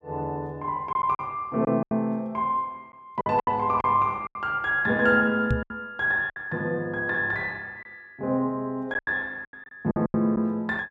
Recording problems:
lost packets; 8% of the sound replaced, filled with silence
knock on the microphone; at 5.5 s; peak +4 dB vs average level

